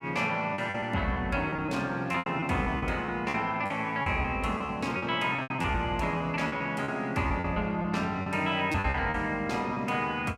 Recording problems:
packet loss; 11% of the sound replaced, filled with repeated pitch periods

